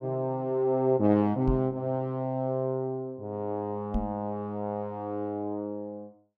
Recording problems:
microphone thump; at 1.5 s and at 4 s; peak +3 dB vs average level

